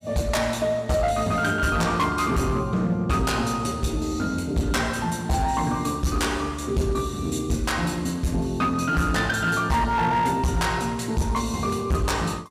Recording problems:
distortion; hard clipping, uneven, signal-to-distortion ratio 10 dB

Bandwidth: 15.5 kHz